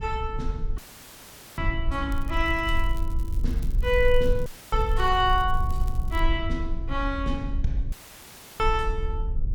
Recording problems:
rumble; below 56 Hz, SNR 3 dB
dropout; at 1 s for 1 s, at 4.5 s and at 8 s for 0.5 s; filled with static
crackling; from 2 to 3.5 s and from 3.5 to 6 s; loose cable, SNR 24 dB

